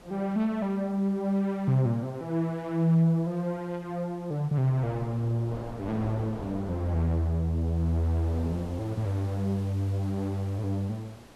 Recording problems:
background hiss; slope -3 dB per octave, SNR 25 dB
wind on the microphone; below 670 Hz, SNR 17 dB

